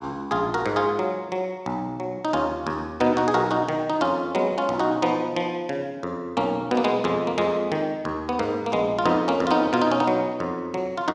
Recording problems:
none

